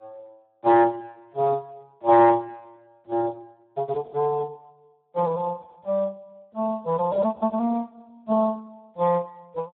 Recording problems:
phone line; 170 Hz to 2.5 kHz, Speex

